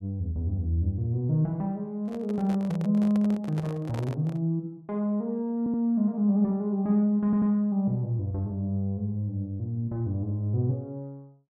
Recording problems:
microphone handling noise; from 2 to 4.5 s; peak -7 dB vs average level
stutter; at 5.5 s and at 7 s

